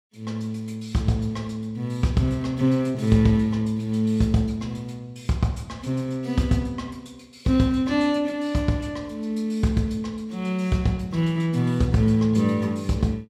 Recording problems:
none

